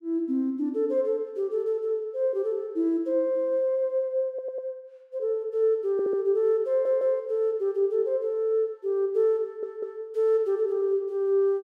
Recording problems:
audio stuttering; 4 times, first at 4.5 s

